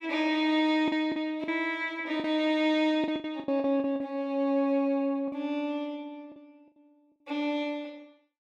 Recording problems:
packet loss; 8% of the sound replaced, filled with the last packet

